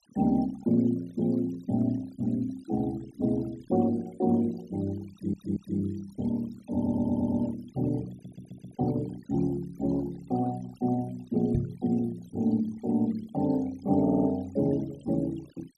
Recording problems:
noise reduction artefacts; signal-to-artefact ratio 22 dB
stutter; 4 times, first at 5 s
microphone thump; at 12 s; peak +3 dB vs average level

